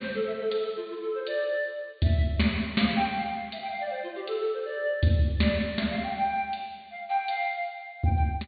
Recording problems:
low-pass filter; nothing above 4.6 kHz

